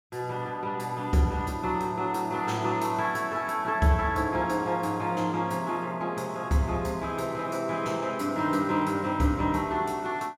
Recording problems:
none

